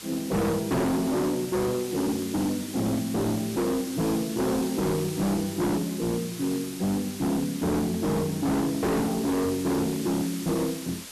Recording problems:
distortion; hard clipping, signal-to-distortion ratio 6 dB
background hiss; slope 0 dB per octave, SNR 11 dB

